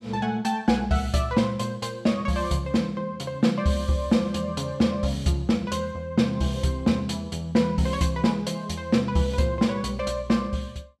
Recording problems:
none

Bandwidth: 14.5 kHz